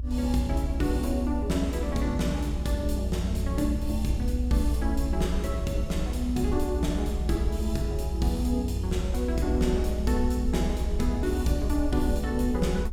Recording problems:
low-frequency rumble; below 62 Hz, strongest tone 58 Hz, SNR 2 dB

